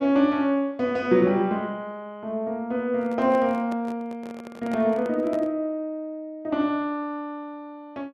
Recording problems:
handling noise; from 3 to 5.5 s; peak -8 dB vs average level

